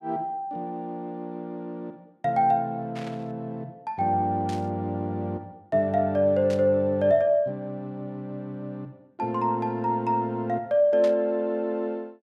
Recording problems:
static burst; 4 times, first at 3 s; peak -10 dB vs average level

